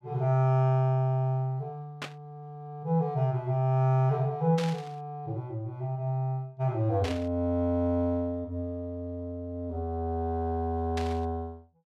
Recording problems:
static burst; 4 times, first at 2 s; peak -4 dB vs average level

